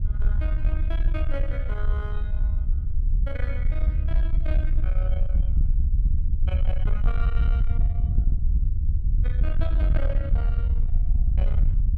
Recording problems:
distorted audio; soft clipping, signal-to-distortion ratio 11 dB
low-frequency rumble; below 62 Hz, SNR -13 dB
wind noise; below 68 Hz, SNR -8 dB

